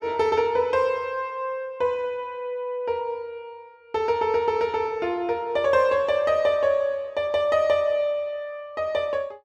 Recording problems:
none

